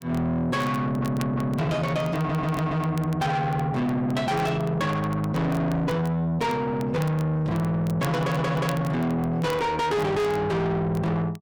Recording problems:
distorted audio; soft clipping, signal-to-distortion ratio 7 dB
crackling; vinyl, SNR 22 dB
audio stuttering; at 1 s, at 2 s and at 8 s

